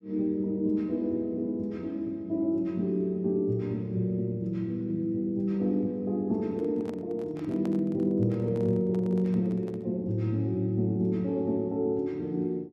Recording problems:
microphone handling noise; from 6.5 to 10 s; peak -10 dB vs average level

